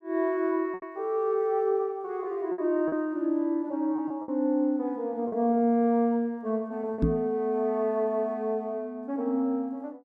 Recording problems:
packet loss; 4% of the sound replaced, filled with repeated pitch periods
microphone thump; at 7 s; peak +6 dB vs average level

